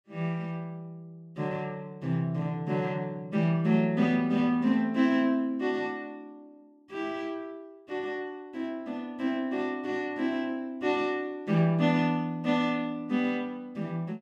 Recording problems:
none

